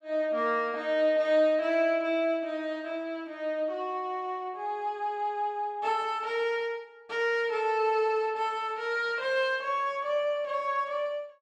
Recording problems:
none

